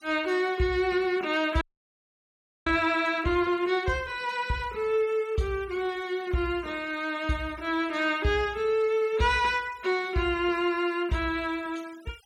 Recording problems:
noise reduction artefacts; signal-to-artefact ratio 25 dB
frozen audio; at 1.5 s for 1 s

